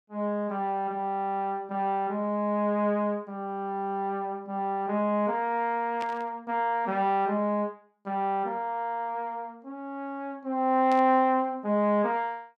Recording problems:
static burst; at 6 s and at 11 s; peak -8 dB vs average level

